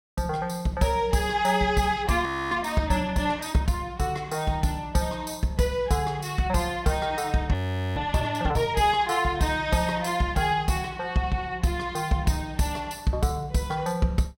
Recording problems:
frozen audio; at 2.5 s and at 7.5 s

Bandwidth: 16 kHz